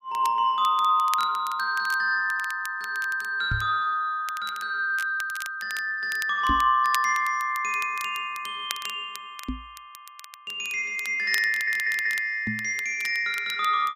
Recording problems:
crackling; vinyl, SNR 16 dB
knock on the microphone; 4 times, first at 3.5 s; peak -1 dB vs average level
audio stuttering; at 11 s

